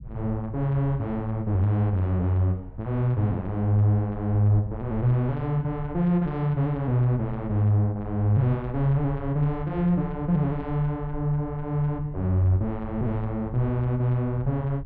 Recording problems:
rumble; below 86 Hz, SNR 16 dB

